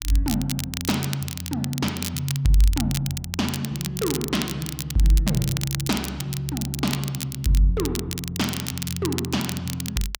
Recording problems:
crackle; vinyl, SNR 7 dB

